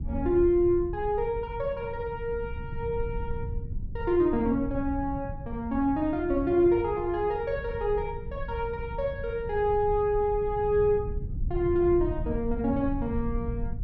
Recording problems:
low-frequency rumble; below 110 Hz, SNR 10 dB

